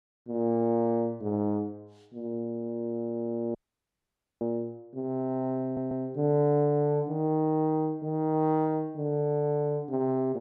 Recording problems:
dropout; at 3.5 s for 1 s
stutter; at 5.5 s

